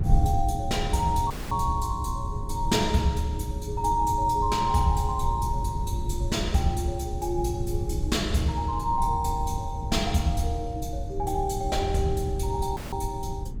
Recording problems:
electrical hum; 60 Hz, harmonics up to 420 Hz, SNR 16 dB
wind on the microphone; below 100 Hz, SNR 4 dB
audio cutting out; at 1.5 s and at 13 s

